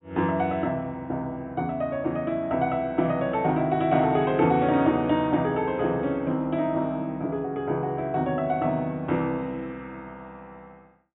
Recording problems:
treble missing; nothing above 4 kHz

